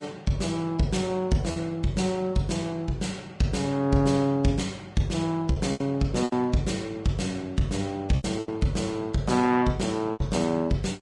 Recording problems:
codec artefacts; Vorbis, log-spectral distance 2 dB
packet loss; 4% of the sound replaced, filled with repeated pitch periods

